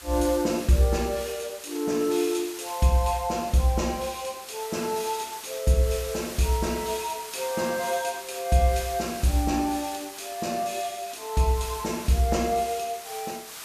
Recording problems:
background hiss; slope +1 dB per octave, SNR 12 dB

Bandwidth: 14.5 kHz